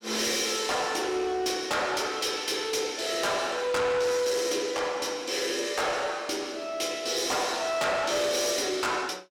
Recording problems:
distorted audio; soft clipping, signal-to-distortion ratio 12 dB

